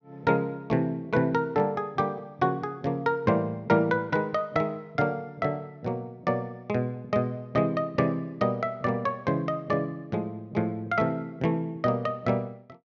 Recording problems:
none

